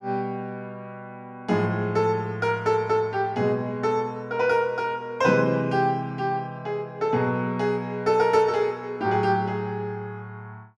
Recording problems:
none

